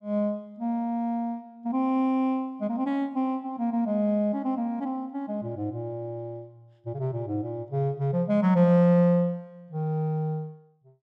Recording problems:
none

